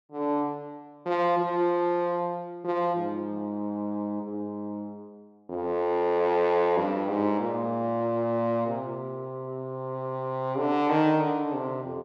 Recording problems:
none

